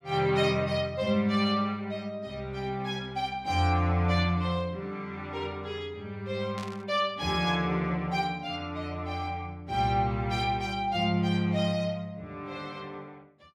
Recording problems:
static burst; at 6.5 s; peak -9 dB vs average level

